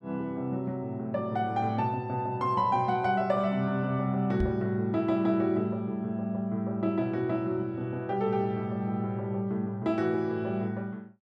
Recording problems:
microphone bump; at 4.5 s; peak +2 dB vs average level

